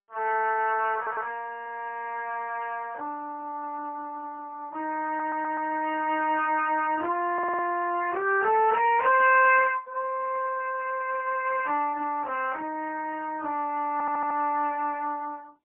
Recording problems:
phone line; 260 Hz to 3.1 kHz, AMR-NB, then MP3
audio stuttering; 4 times, first at 1 s

